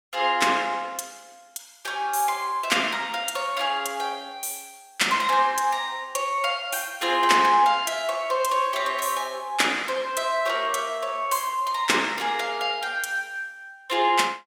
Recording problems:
none

